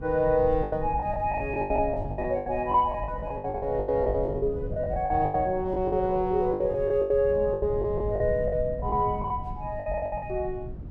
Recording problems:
wind on the microphone; below 140 Hz, SNR 11 dB
packet loss; 18% of the sound replaced, filled with the last packet

